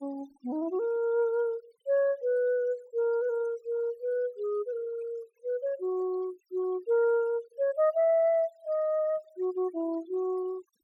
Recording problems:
noise reduction artefacts; signal-to-artefact ratio 26 dB

